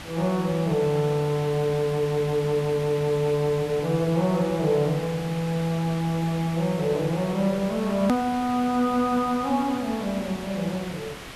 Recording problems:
hiss; SNR 13 dB
click at an edit; at 8 s

